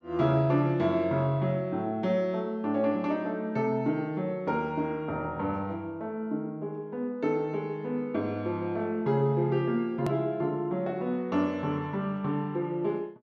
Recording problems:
edit click; at 10 s

